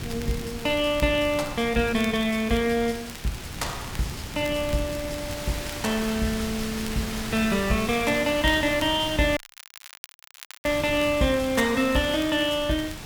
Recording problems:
hiss; slope -1 dB per octave, SNR 11 dB
wind on the microphone; below 220 Hz, SNR 14 dB
crackling; vinyl, SNR 19 dB
dropout; at 9.5 s for 1.5 s

